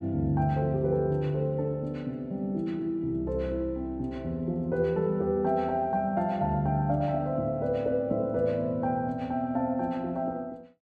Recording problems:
none

